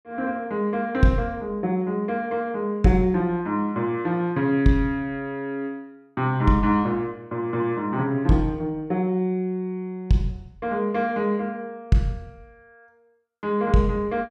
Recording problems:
none

